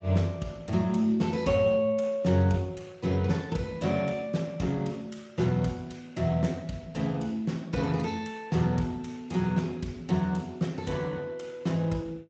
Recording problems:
lossy compression; Speex, log-spectral distance 3 dB

